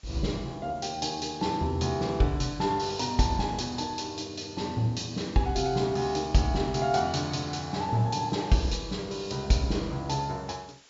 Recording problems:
treble cut off; nothing above 7.4 kHz
hiss; slope +1 dB per octave, SNR 27 dB

